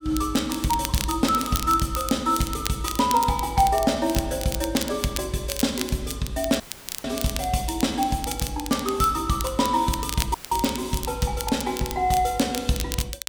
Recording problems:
crackle; vinyl, SNR 9 dB
dropout; at 6.5 s and at 10 s; filled with static

